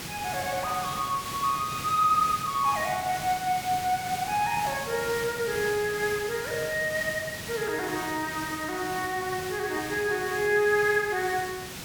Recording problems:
hiss; slope -2 dB per octave, SNR 9 dB

